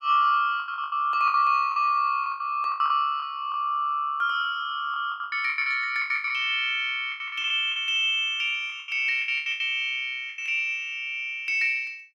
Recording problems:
lost packets; 14% of the sound replaced, filled with the last packet

